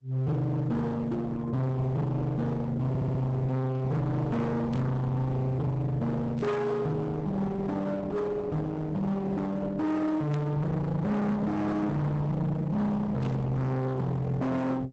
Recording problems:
lossy compression; Opus, log-spectral distance 2 dB
distorted audio; hard clipping, uneven, signal-to-distortion ratio 5 dB
audio stuttering; at 3 s
static burst; 4 times, first at 4.5 s; peak -13 dB vs average level

